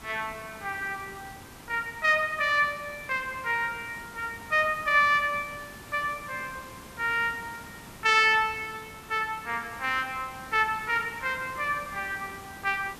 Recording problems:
background hiss; slope -4 dB per octave, SNR 18 dB

